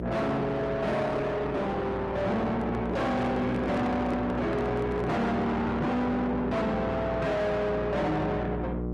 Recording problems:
codec artefacts; Opus, log-spectral distance 2 dB, nothing above 13.1 kHz
distorted audio; soft clipping, signal-to-distortion ratio 5 dB
electrical hum; 60 Hz, harmonics up to 1.3 kHz, SNR 6 dB
handling noise; from 2.5 to 5.5 s; peak 0 dB vs average level

